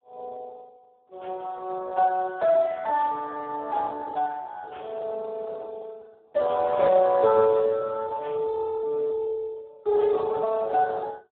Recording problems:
phone line; 300 Hz to 2.2 kHz, Speex

